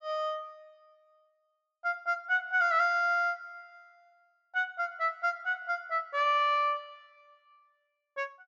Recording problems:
treble missing; nothing above 8 kHz

